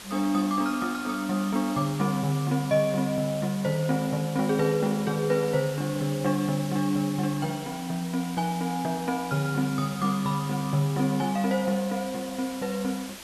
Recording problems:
background hiss; slope -1 dB per octave, SNR 14 dB

